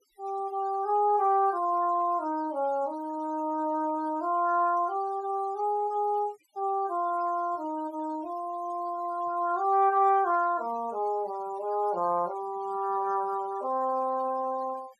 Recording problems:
denoising artefacts; signal-to-artefact ratio 25 dB

